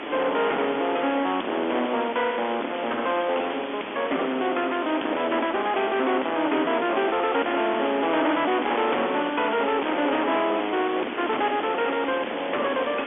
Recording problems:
telephone audio; 220 Hz to 3.5 kHz, G.726
distorted audio; soft clipping, signal-to-distortion ratio 5 dB
background hiss; SNR 10 dB
wind noise; below 1.1 kHz, SNR 17 dB

